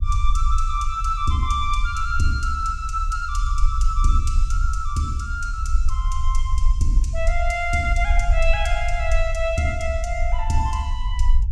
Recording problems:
rumble; below 52 Hz, SNR 0 dB

